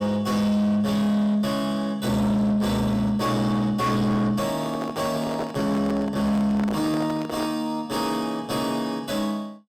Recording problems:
distorted audio; soft clipping, signal-to-distortion ratio 11 dB
microphone handling noise; from 4.5 to 7.5 s; peak -3 dB vs average level

